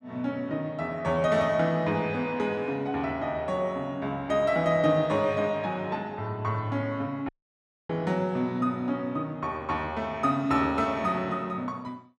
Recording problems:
dropout; at 7.5 s for 0.5 s

